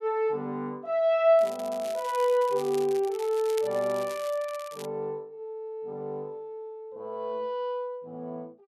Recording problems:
crackle; from 1.5 to 5 s; loose cable, SNR 18 dB

